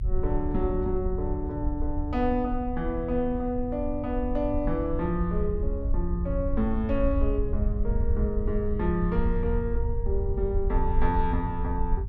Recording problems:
rumble; below 68 Hz, SNR 2 dB

